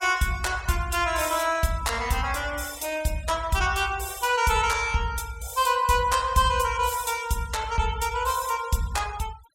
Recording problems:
denoising artefacts; signal-to-artefact ratio 20 dB

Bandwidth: 16.5 kHz